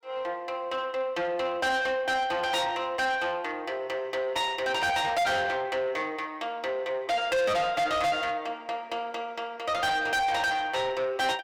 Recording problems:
distortion; soft clipping, signal-to-distortion ratio 6 dB

